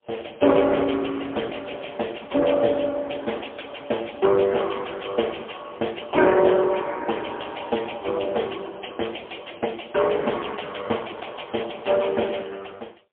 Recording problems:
phone line; 260 Hz to 3.4 kHz, AMR-NB, then MP3

